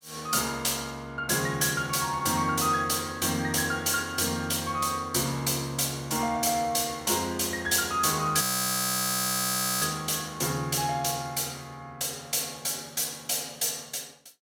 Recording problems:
audio freezing; at 8.5 s for 1.5 s

